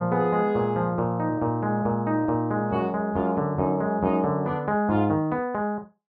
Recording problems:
none

